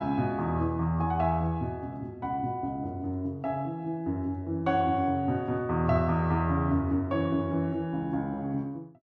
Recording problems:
none

